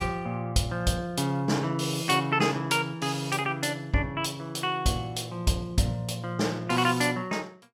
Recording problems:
none

